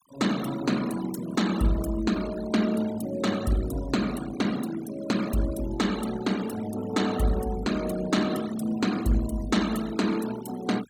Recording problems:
denoising artefacts; signal-to-artefact ratio 13 dB

